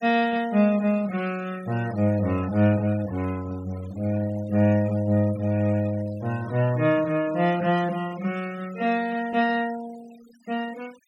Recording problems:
noise reduction artefacts; signal-to-artefact ratio 21 dB

